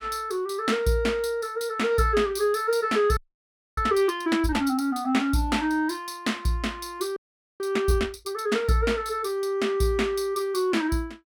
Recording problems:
audio freezing; at 3 s for 0.5 s and at 7 s

